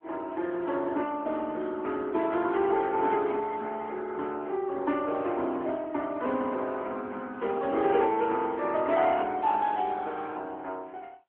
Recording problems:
telephone audio; 220 Hz to 3.6 kHz, AMR-NB

